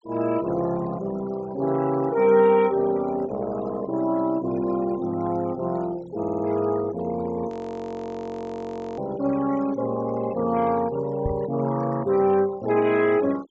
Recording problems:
treble missing; nothing above 8 kHz
denoising artefacts; signal-to-artefact ratio 19 dB
stutter; at 6 s
frozen audio; at 7.5 s for 1.5 s
microphone bump; at 11 s; peak -1 dB vs average level

